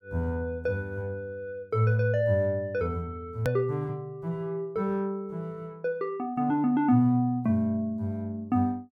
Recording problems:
click at an edit; at 3.5 s

